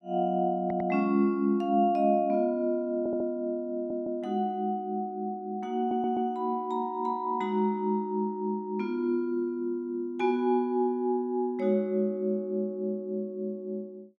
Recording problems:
stutter; 4 times, first at 0.5 s

